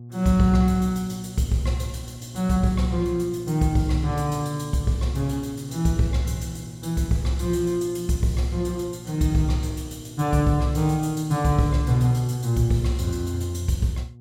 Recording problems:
electrical hum; 60 Hz, harmonics up to 480 Hz, SNR 17 dB

